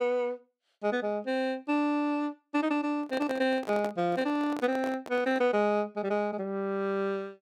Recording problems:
handling noise; from 3 to 5.5 s; peak -5 dB vs average level

